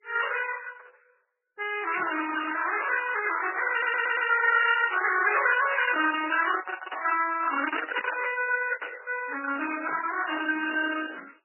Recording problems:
lossy compression; Opus, then MP3, log-spectral distance 6 dB, nothing above 2.9 kHz
burst of static; at 2 s, at 8 s and at 10 s; peak -7 dB vs average level
audio stuttering; at 3.5 s

